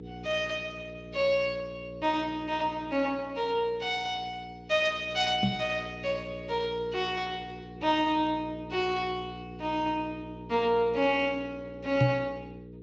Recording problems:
codec artefacts; Speex, log-spectral distance 3 dB
hum; 60 Hz, harmonics up to 480 Hz, SNR 14 dB
knock on the microphone; at 5.5 s and at 12 s; peak +7 dB vs average level

